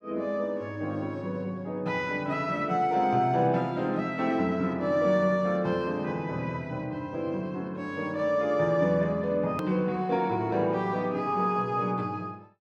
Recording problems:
hard cut with a click; at 9.5 s

